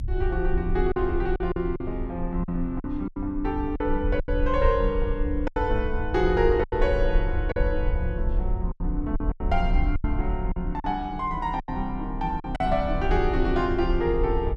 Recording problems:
low-frequency rumble; below 58 Hz, SNR 4 dB
lost packets; 8% of the sound replaced, filled with silence

